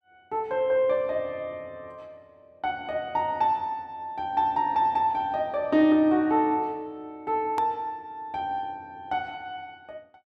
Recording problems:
edit click; at 7.5 s

